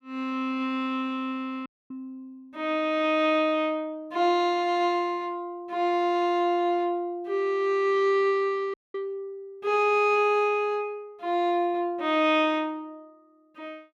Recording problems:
dropout; at 1.5 s and at 8.5 s

